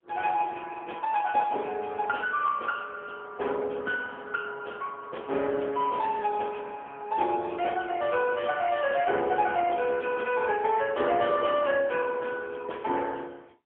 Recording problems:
telephone audio; 340 Hz to 2.8 kHz, AMR-NB, then MP3

